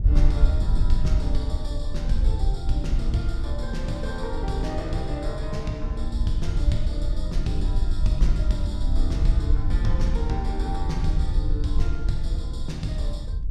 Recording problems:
wind on the microphone; below 60 Hz, SNR -5 dB

